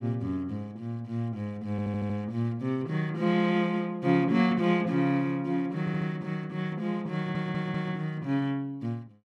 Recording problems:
audio stuttering; at 1.5 s, at 6 s and at 7 s

